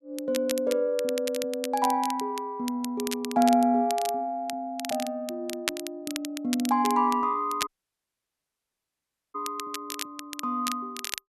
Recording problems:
crackle; vinyl, SNR 10 dB
dropout; at 7.5 s for 1.5 s

